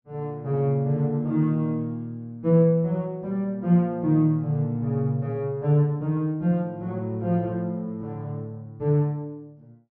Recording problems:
low-pass filter; nothing above 6.1 kHz

